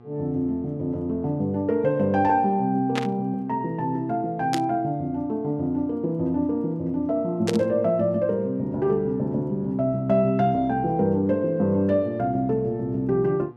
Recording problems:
electrical hum; 60 Hz, harmonics up to 1.6 kHz, SNR 25 dB
static burst; at 3 s, at 4.5 s and at 7.5 s; peak -1 dB vs average level

